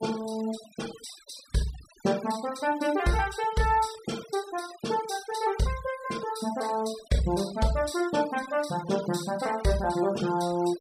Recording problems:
noise reduction artefacts; signal-to-artefact ratio 16 dB

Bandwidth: 15 kHz